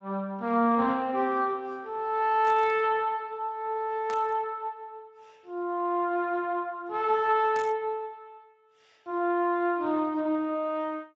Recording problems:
codec artefacts; Speex, log-spectral distance 2 dB
burst of static; at 2.5 s, at 4 s and at 7.5 s; peak -11 dB vs average level

